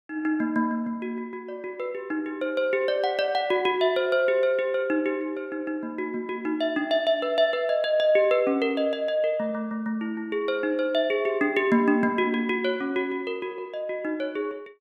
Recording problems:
none

